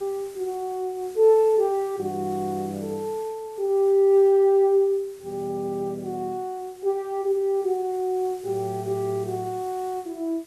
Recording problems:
background hiss; SNR 25 dB

